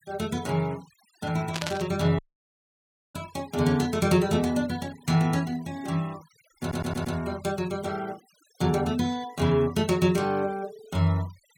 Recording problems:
denoising artefacts; signal-to-artefact ratio 22 dB
static burst; at 1.5 s; peak 0 dB vs average level
audio cutting out; at 2 s for 1 s
stutter; at 6.5 s

